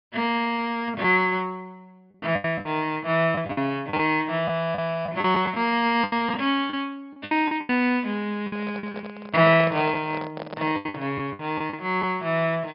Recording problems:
treble cut off; nothing above 5.2 kHz
packet loss; 9% of the sound replaced, filled with the last packet
handling noise; from 8.5 to 11 s; peak -6 dB vs average level

